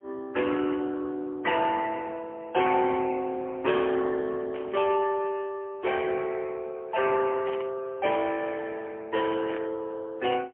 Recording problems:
phone line; 260 Hz to 3.1 kHz, AMR-NB, then MP3
static burst; 4 times, first at 2.5 s; peak -9 dB vs average level

